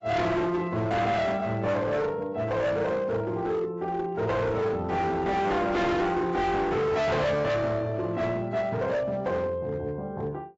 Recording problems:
lossy codec; AAC, log-spectral distance 2 dB, nothing above 7.6 kHz
distortion; hard clipping, signal-to-distortion ratio 7 dB

